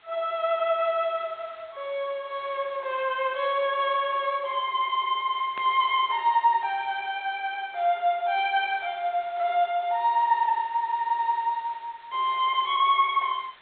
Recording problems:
low-pass filter; nothing above 4 kHz
hiss; SNR 27 dB
static burst; at 5.5 s; peak -10 dB vs average level

